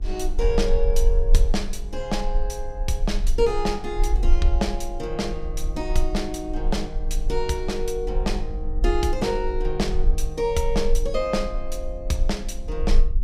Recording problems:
mains hum; 50 Hz, harmonics up to 1.2 kHz, SNR 23 dB
rumble; below 38 Hz, strongest tone 24 Hz, SNR 1 dB

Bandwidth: 15.5 kHz